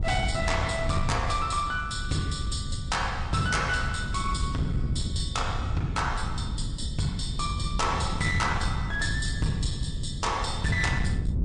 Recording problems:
lossy codec; MP3, log-spectral distance 2 dB, nothing above 9.5 kHz
distortion; hard clipping, signal-to-distortion ratio 12 dB
wind noise; below 130 Hz, SNR 3 dB

